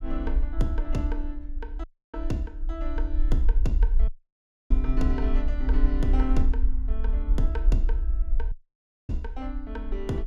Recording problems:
rumble; below 46 Hz, SNR -5 dB
audio cutting out; at 2 s, at 4 s for 0.5 s and at 8.5 s for 0.5 s

